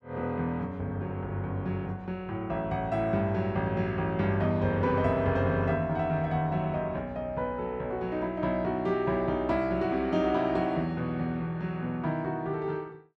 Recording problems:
none

